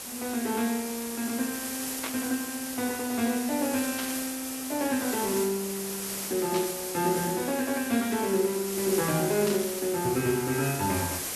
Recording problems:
background hiss; SNR 5 dB
burst of static; 4 times, first at 2 s; peak -2 dB vs average level

